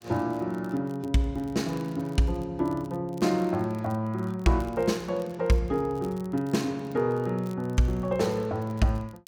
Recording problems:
crackling; vinyl, SNR 28 dB

